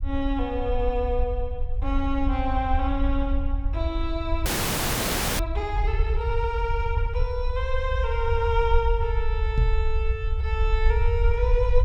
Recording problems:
low-frequency rumble; below 66 Hz, SNR -1 dB
frozen audio; at 4.5 s for 1 s
microphone bump; at 9.5 s; peak +6 dB vs average level

